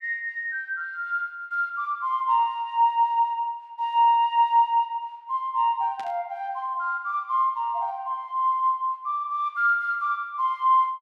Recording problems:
static burst; at 6 s; peak -14 dB vs average level

